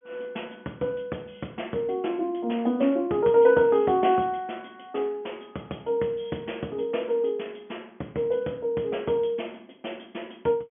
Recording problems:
telephone audio; 170 Hz to 3.4 kHz, G.726

